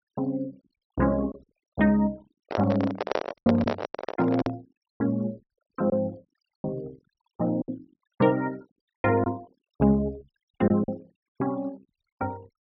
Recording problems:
treble cut off; nothing above 5.8 kHz
noise reduction artefacts; signal-to-artefact ratio 26 dB
packet loss; 7% of the sound replaced, filled with silence
microphone handling noise; from 2.5 to 4.5 s; peak +4 dB vs average level

